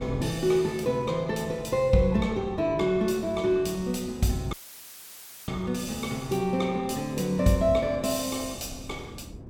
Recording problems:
wind noise; below 270 Hz, SNR 17 dB
dropout; at 4.5 s for 1 s; filled with static

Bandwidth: 17 kHz